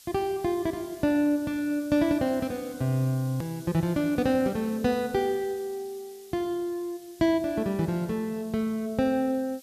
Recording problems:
background hiss; SNR 22 dB
edit click; at 3.5 s

